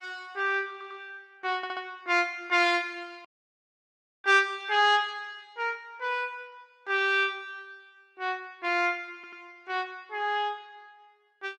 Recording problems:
lossy compression; Opus, log-spectral distance 2 dB
stutter; at 0.5 s, at 1.5 s and at 9 s
audio cutting out; at 3.5 s for 1 s

